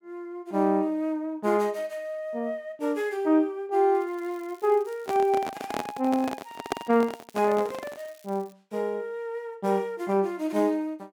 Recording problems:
crackling; from 4 to 8.5 s; loose cable, SNR 28 dB
microphone handling noise; from 5 to 8 s; peak +3 dB vs average level

